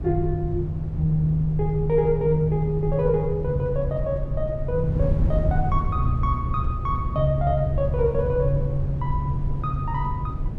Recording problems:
wind on the microphone; below 120 Hz, SNR 5 dB

